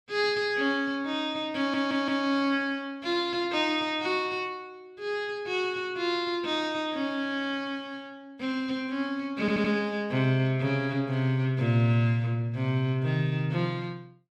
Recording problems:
stutter; at 1.5 s and at 9.5 s

